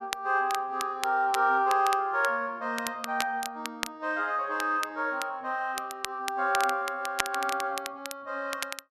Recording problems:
crackling; vinyl, SNR 10 dB

